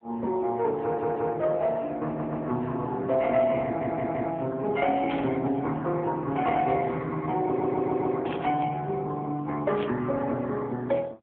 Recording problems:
telephone audio; 130 Hz to 3 kHz, AMR-NB
stutter; 4 times, first at 1 s
static burst; at 5 s, at 8 s and at 9.5 s; peak -8 dB vs average level

